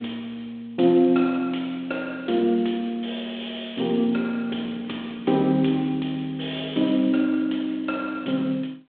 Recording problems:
telephone audio; 190 Hz to 3.7 kHz, G.726

